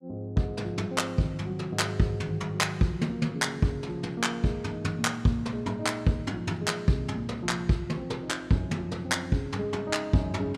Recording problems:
none

